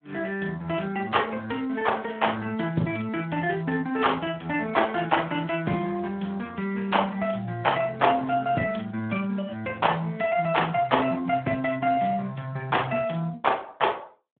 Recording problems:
phone line; 130 Hz to 3.4 kHz, Speex

